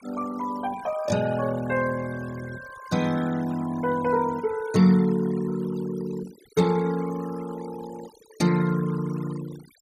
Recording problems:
denoising artefacts; signal-to-artefact ratio 18 dB

